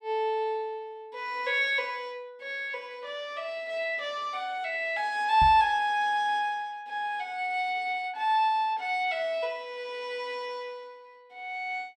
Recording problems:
knock on the microphone; at 5.5 s; peak 0 dB vs average level

